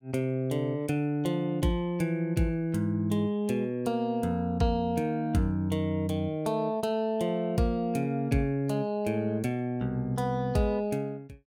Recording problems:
none

